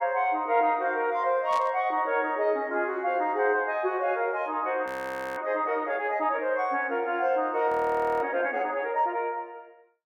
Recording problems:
burst of static; at 1.5 s; peak -10 dB vs average level
audio freezing; at 5 s for 0.5 s and at 7.5 s for 0.5 s

